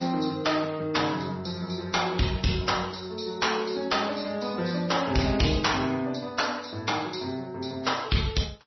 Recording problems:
codec artefacts; MP3, then MP3, log-spectral distance 6 dB, nothing above 5.8 kHz
distorted audio; hard clipping, uneven, signal-to-distortion ratio 11 dB

